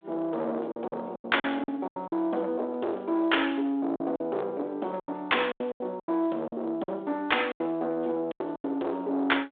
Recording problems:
telephone audio; 280 Hz to 3.7 kHz, G.726
distorted audio; soft clipping, signal-to-distortion ratio 9 dB
packet loss; 11% of the sound replaced, filled with silence

